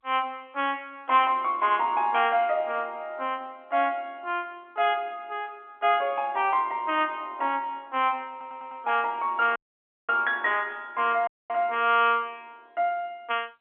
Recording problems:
phone line; 240 Hz to 3.4 kHz, G.711
stutter; at 8.5 s
dropout; at 9.5 s for 0.5 s and at 11 s

